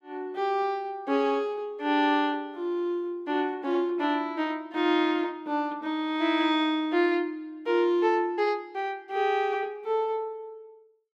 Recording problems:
none

